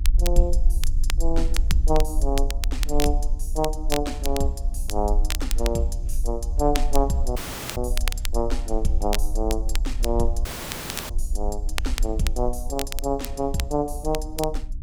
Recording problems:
mains hum; 60 Hz, harmonics up to 300 Hz, SNR 19 dB
rumble; below 44 Hz, strongest tone 22 Hz, SNR 1 dB
crackle; vinyl, SNR 7 dB
dropout; at 7.5 s and at 10 s for 0.5 s

